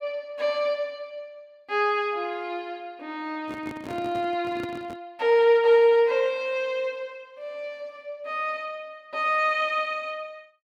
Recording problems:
handling noise; from 3.5 to 5 s; peak -7 dB vs average level

